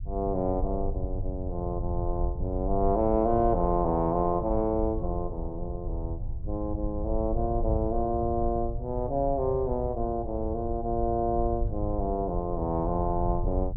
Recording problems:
low-frequency rumble; below 86 Hz, SNR 6 dB

